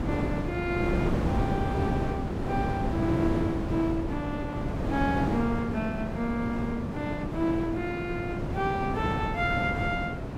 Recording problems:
wind on the microphone; below 420 Hz, SNR 0 dB

